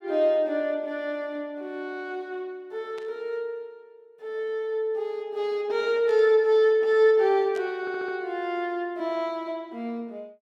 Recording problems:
burst of static; at 3 s, at 6 s and at 7.5 s; peak -16 dB vs average level
stutter; at 8 s

